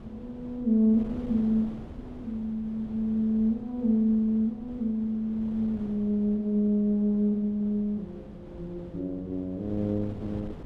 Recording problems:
wind on the microphone; below 360 Hz, SNR 17 dB

